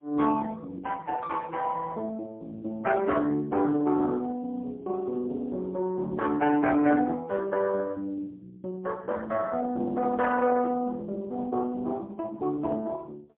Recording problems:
telephone audio; 220 Hz to 2.3 kHz, AMR-NB, then MP3

